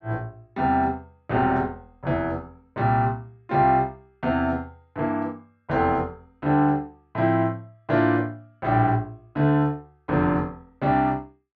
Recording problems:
none

